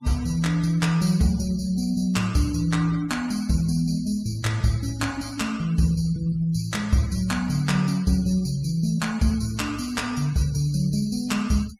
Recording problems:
denoising artefacts; signal-to-artefact ratio 21 dB

